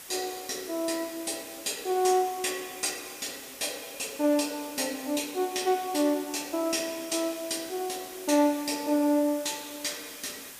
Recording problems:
hiss; slope 0 dB per octave, SNR 14 dB

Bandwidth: 15 kHz